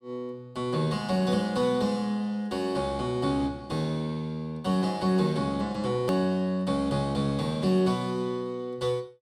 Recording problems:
edit click; at 6 s

